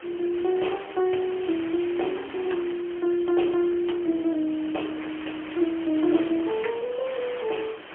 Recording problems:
telephone audio; 240 Hz to 3.3 kHz, AMR-NB, then MP3
background hiss; SNR 14 dB

